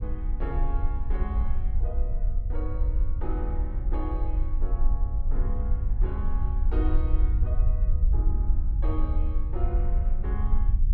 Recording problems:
low-frequency rumble; below 56 Hz, SNR -11 dB

